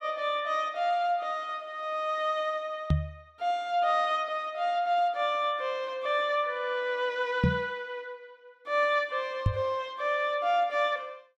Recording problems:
microphone thump; at 3 s, at 7.5 s and at 9.5 s; peak +7 dB vs average level

